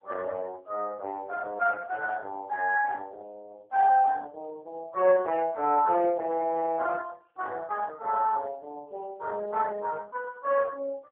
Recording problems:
phone line; 300 Hz to 3 kHz, AMR-NB

